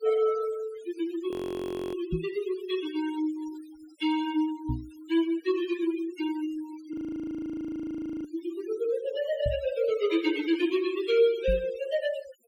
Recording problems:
denoising artefacts; signal-to-artefact ratio 14 dB
frozen audio; at 1.5 s for 0.5 s and at 7 s for 1.5 s
microphone thump; 4 times, first at 2 s; peak +2 dB vs average level

